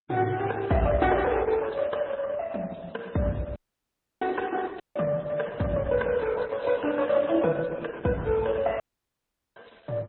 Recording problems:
lossy compression; Opus, then MP3, log-spectral distance 5 dB, nothing above 3.9 kHz
audio cutting out; at 3.5 s for 0.5 s, at 5 s and at 9 s for 1 s

